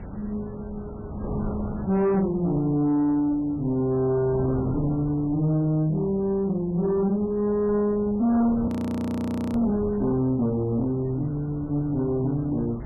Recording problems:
lossy compression; MP3, log-spectral distance 2 dB, nothing above 13.1 kHz
distortion; soft clipping, signal-to-distortion ratio 11 dB
wind on the microphone; below 380 Hz, SNR 12 dB
audio freezing; at 8.5 s for 1 s

